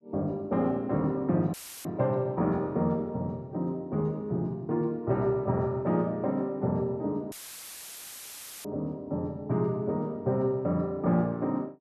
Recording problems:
audio cutting out; at 1.5 s and at 7.5 s for 1.5 s; filled with static

